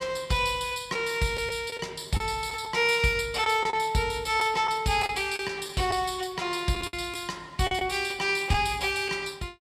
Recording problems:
lost packets; 5% of the sound replaced, filled with the last packet

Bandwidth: 14 kHz